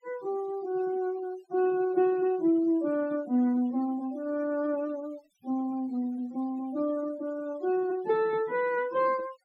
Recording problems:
noise reduction artefacts; signal-to-artefact ratio 22 dB

